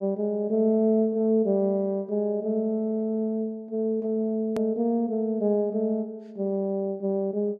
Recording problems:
hard cut with a click; at 4.5 s

